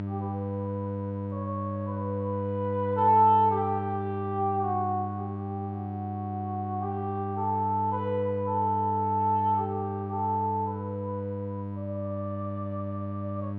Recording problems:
electrical hum; 50 Hz, harmonics up to 1 kHz, SNR 5 dB

